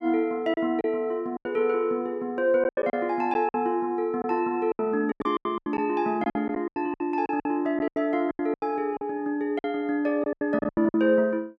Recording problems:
packet loss; 14% of the sound replaced, filled with silence

